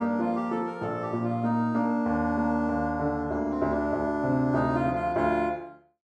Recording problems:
none

